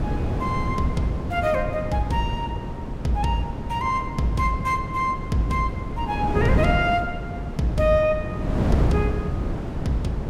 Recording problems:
wind noise; below 290 Hz, SNR 3 dB

